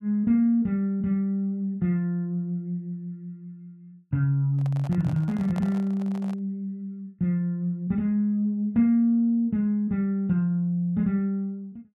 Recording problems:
microphone handling noise; from 4.5 to 6.5 s; peak -10 dB vs average level

